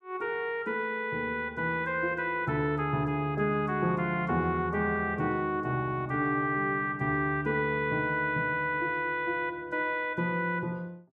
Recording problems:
none

